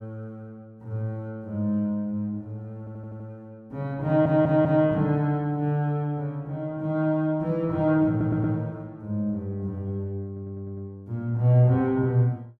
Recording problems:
audio stuttering; 4 times, first at 3 s

